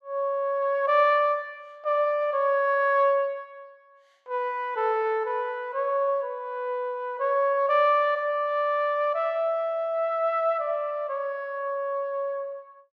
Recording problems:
none

